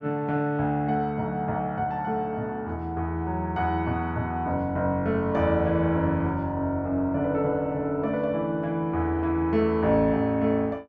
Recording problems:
none

